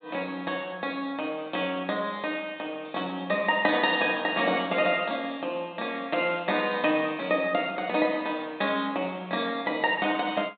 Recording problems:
treble cut off; nothing above 4 kHz

